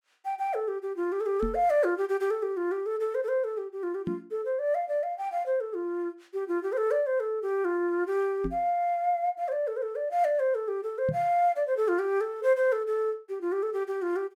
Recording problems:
microphone bump; 4 times, first at 1.5 s; peak 0 dB vs average level

